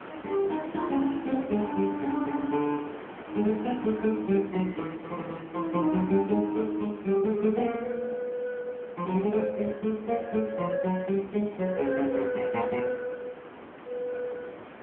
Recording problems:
telephone audio; 150 Hz to 3.3 kHz, AMR-NB
hiss; SNR 16 dB
wind noise; below 940 Hz, SNR 26 dB

